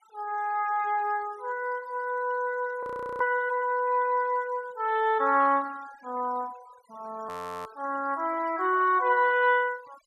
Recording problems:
noise reduction artefacts; signal-to-artefact ratio 24 dB
audio freezing; at 3 s and at 7.5 s

